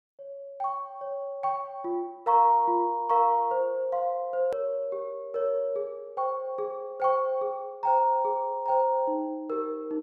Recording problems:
hard cut with a click; at 4.5 s

